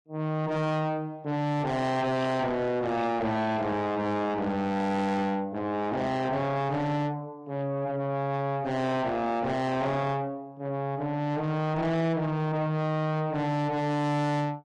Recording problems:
lossy codec; AAC, log-spectral distance 2 dB, nothing above 10.4 kHz
distorted audio; soft clipping, signal-to-distortion ratio 6 dB

